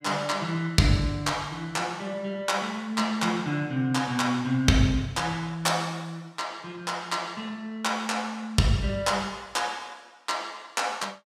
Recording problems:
none

